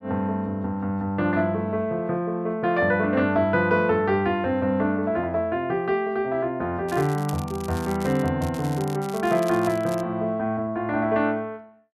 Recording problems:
crackle; from 7 to 8.5 s and from 8.5 to 10 s; loose cable, SNR 19 dB

